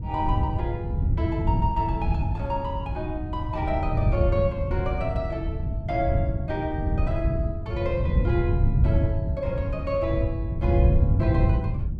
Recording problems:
wind noise; below 120 Hz, SNR -4 dB

